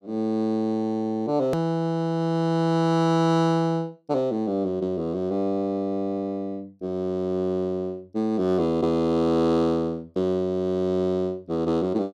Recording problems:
hard cut with a click; at 1.5 s

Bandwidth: 13.5 kHz